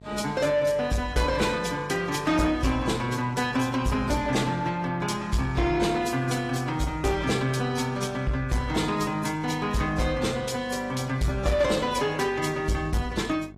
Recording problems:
codec artefacts; AAC, log-spectral distance 3 dB
distortion; soft clipping, signal-to-distortion ratio 11 dB
hum; 50 Hz, harmonics up to 1.1 kHz, SNR 22 dB

